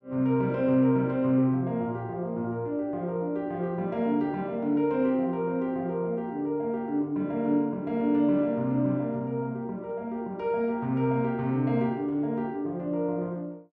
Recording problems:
none

